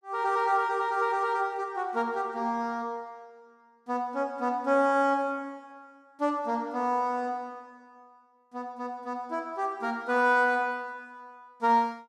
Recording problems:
none

